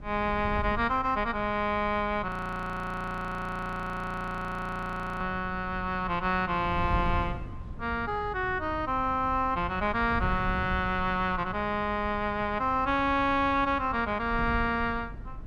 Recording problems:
wind on the microphone; below 120 Hz, SNR 11 dB
frozen audio; at 2.5 s for 3 s

